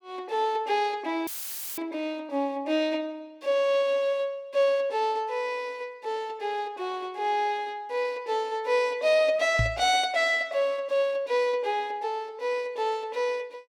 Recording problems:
dropout; at 1.5 s for 0.5 s; filled with static
microphone bump; at 9.5 s; peak +4 dB vs average level

